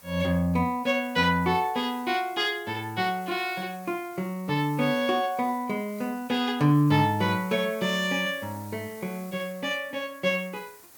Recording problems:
background hiss; slope -2 dB per octave, SNR 22 dB

